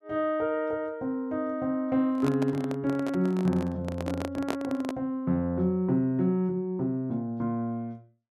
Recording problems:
microphone handling noise; from 2 to 5 s; peak +2 dB vs average level

